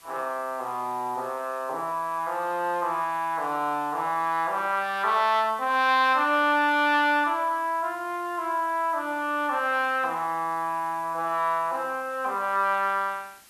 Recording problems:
background hiss; slope 0 dB per octave, SNR 25 dB

